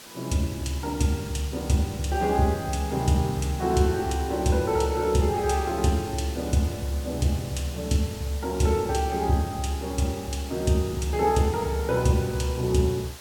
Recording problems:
background hiss; slope -1 dB per octave, SNR 16 dB

